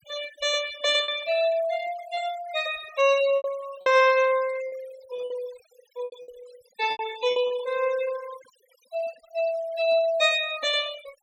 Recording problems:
denoising artefacts; signal-to-artefact ratio 17 dB
packet loss; 6% of the sound replaced, filled with repeated pitch periods

